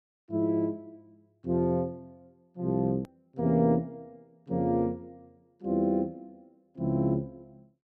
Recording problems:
hard cut with a click; at 3 s

